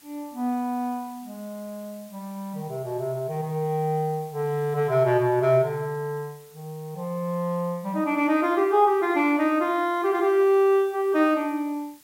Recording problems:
background hiss; SNR 27 dB

